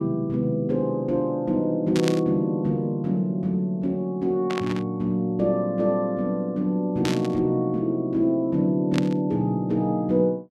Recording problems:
static burst; 4 times, first at 2 s; peak -1 dB vs average level

